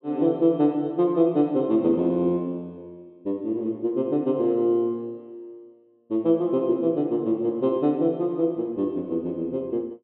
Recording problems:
treble missing; nothing above 4 kHz

